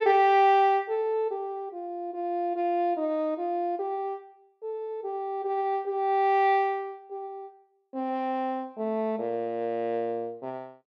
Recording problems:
none

